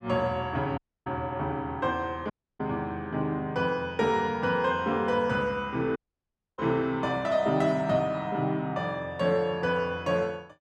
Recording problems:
dropout; at 1 s, at 2.5 s and at 6 s for 0.5 s

